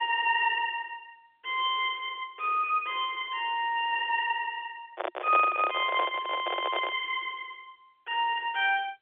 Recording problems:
phone line; 320 Hz to 3.6 kHz, G.711
microphone handling noise; from 5 to 7 s; peak +1 dB vs average level

